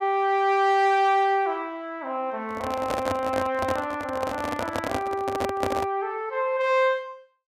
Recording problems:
microphone handling noise; from 2.5 to 6 s; peak +2 dB vs average level

